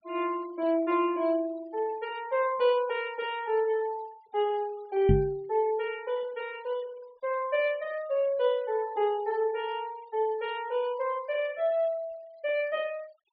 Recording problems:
treble missing; nothing above 5 kHz
noise reduction artefacts; signal-to-artefact ratio 24 dB
microphone bump; at 5 s; peak +9 dB vs average level

